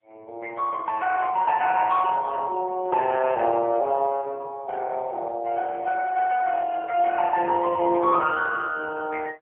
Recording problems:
phone line; 300 Hz to 2.8 kHz, AMR-NB, then MP3

